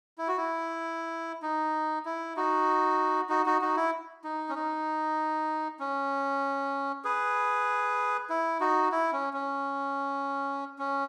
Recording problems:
none

